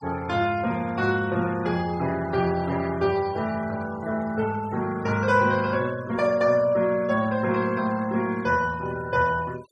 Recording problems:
noise reduction artefacts; signal-to-artefact ratio 21 dB

